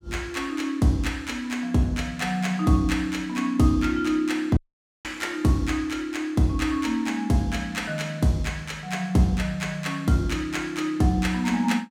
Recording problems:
audio cutting out; at 4.5 s

